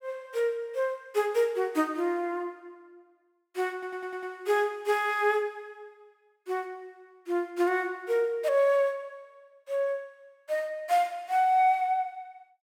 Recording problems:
stutter; at 3.5 s

